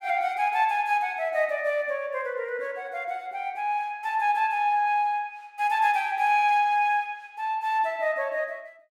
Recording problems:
none

